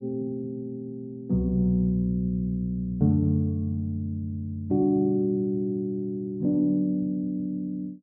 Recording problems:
none

